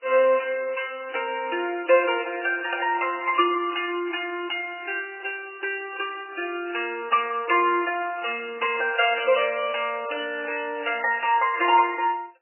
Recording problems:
codec artefacts; MP3, log-spectral distance 6 dB, nothing above 2.6 kHz

